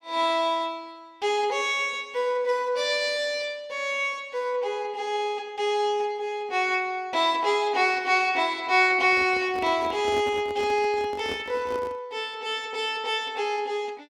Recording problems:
microphone handling noise; from 9 to 12 s; peak -7 dB vs average level

